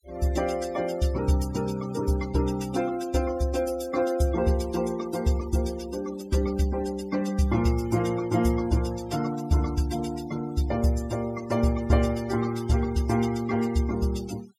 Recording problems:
noise reduction artefacts; signal-to-artefact ratio 17 dB

